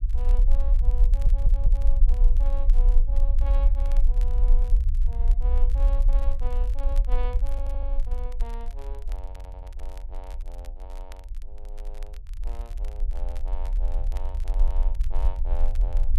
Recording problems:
low-frequency rumble; below 42 Hz, strongest tone 24 Hz, SNR -17 dB
crackling; vinyl, SNR 13 dB
audio stuttering; at 1 s, at 7.5 s and at 9.5 s

